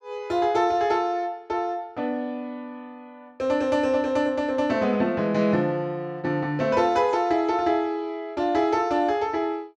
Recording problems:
none

